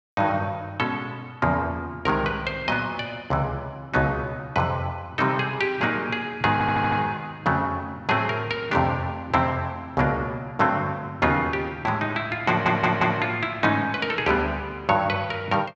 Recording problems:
stutter; at 6.5 s and at 12 s

